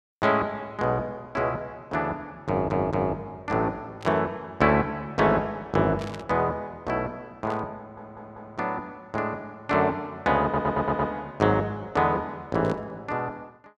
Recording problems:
stutter; at 2.5 s, at 8 s and at 10 s
burst of static; 4 times, first at 4 s; peak -10 dB vs average level

